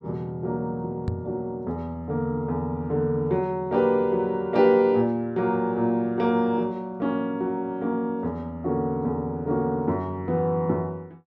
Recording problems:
knock on the microphone; at 1 s; peak +1 dB vs average level

